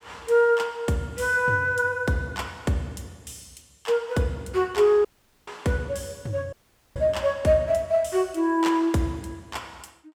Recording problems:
dropout; at 5 s and at 6.5 s

